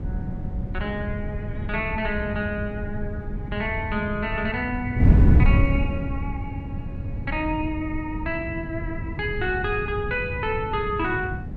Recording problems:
hum; 50 Hz, harmonics up to 500 Hz, SNR 17 dB
wind noise; below 140 Hz, SNR -1 dB

